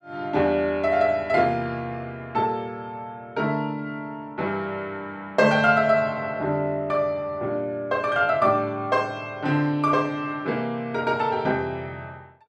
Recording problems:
none

